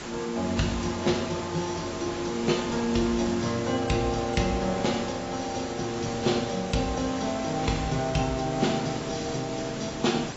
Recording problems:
lossy codec; AAC, log-spectral distance 12 dB, nothing above 7.6 kHz
hiss; slope -4 dB per octave, SNR 8 dB

